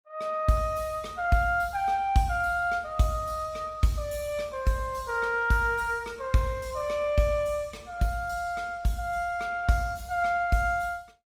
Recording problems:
codec artefacts; Opus, log-spectral distance 3 dB

